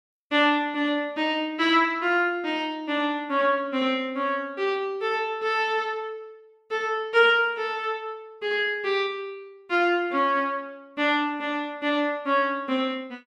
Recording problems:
none

